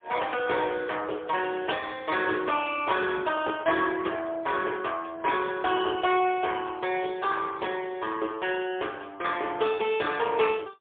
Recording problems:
telephone audio; 300 Hz to 3.5 kHz, AMR-NB, then MP3

